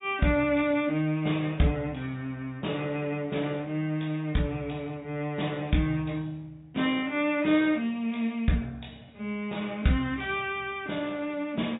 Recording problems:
treble cut off; nothing above 3.8 kHz
codec artefacts; MP3, log-spectral distance 2 dB

